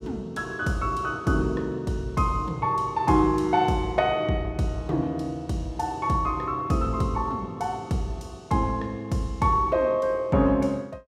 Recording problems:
none

